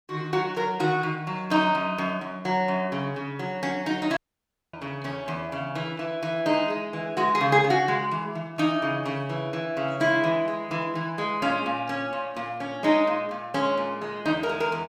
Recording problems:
audio cutting out; at 4 s for 0.5 s

